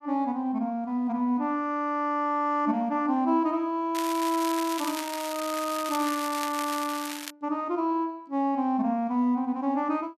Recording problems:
crackling; from 4 to 7.5 s; loose cable, SNR 9 dB

